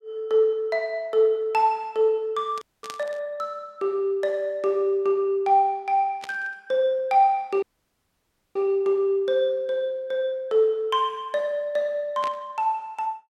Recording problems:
static burst; at 2.5 s, at 6 s and at 12 s; peak -8 dB vs average level
audio cutting out; at 2.5 s and at 7.5 s for 1 s

